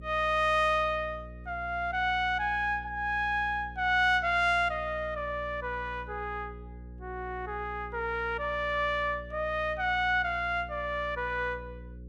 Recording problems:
hum; 60 Hz, harmonics up to 540 Hz, SNR 16 dB

